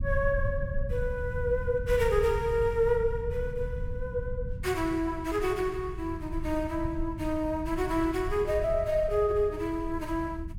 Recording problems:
low-frequency rumble; below 96 Hz, SNR 8 dB

